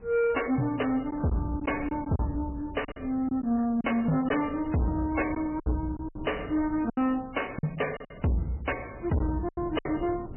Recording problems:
lossy compression; MP3, log-spectral distance 5 dB, nothing above 3 kHz
distortion; soft clipping, signal-to-distortion ratio 6 dB
wind on the microphone; below 270 Hz, SNR 15 dB
packet loss; 7% of the sound replaced, filled with silence
crackling; from 2 to 4 s; loose cable, SNR 27 dB

